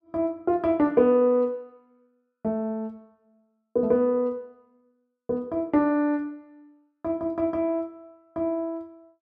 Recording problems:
none

